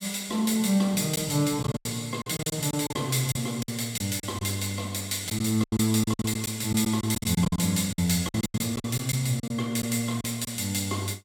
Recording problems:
packet loss; 12% of the sound replaced, filled with silence

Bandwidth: 17 kHz